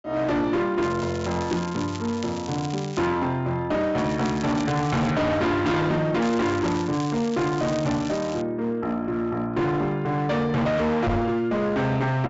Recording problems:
low-pass filter; nothing above 8 kHz
distortion; hard clipping, uneven, signal-to-distortion ratio 7 dB
crackling; from 1 to 3 s, from 4 to 5 s and from 6 to 8.5 s; loose cable, SNR 16 dB
microphone bump; at 11 s; peak +4 dB vs average level

